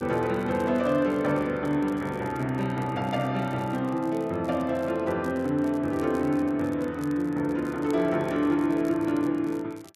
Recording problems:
crackle; vinyl, SNR 28 dB

